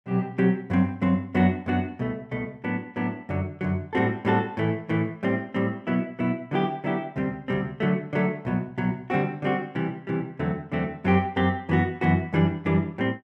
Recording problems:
none

